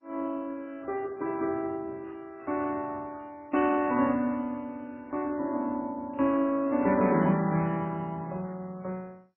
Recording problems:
lossy codec; MP3, then MP2, log-spectral distance 2 dB, nothing above 2.7 kHz

